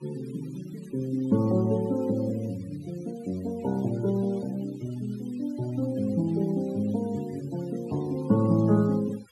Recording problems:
noise reduction artefacts; signal-to-artefact ratio 23 dB

